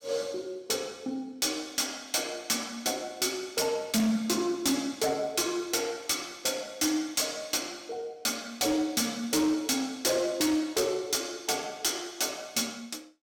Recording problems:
distorted audio; hard clipping, signal-to-distortion ratio 10 dB

